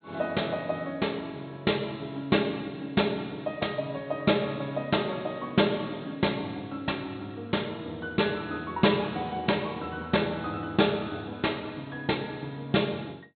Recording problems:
low-pass filter; nothing above 4.2 kHz

